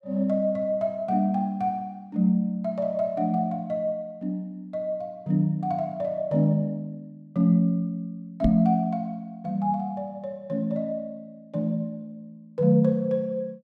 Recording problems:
microphone bump; at 8.5 s; peak +5 dB vs average level

